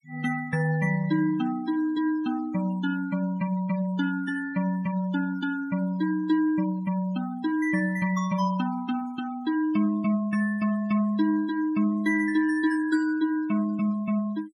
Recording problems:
denoising artefacts; signal-to-artefact ratio 22 dB

